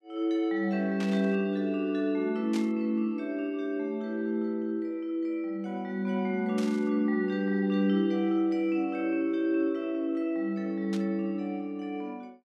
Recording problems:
static burst; 4 times, first at 1 s; peak -8 dB vs average level

